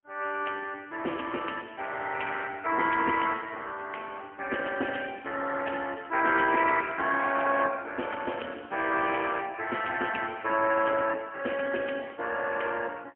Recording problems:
phone line; 260 Hz to 3.1 kHz, AMR-NB, then MP3

